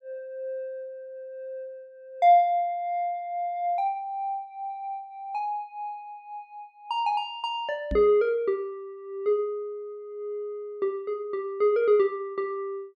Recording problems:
microphone bump; at 8 s; peak -1 dB vs average level

